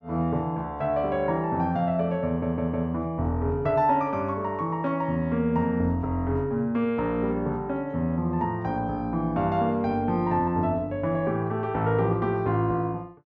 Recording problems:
audio stuttering; at 2.5 s

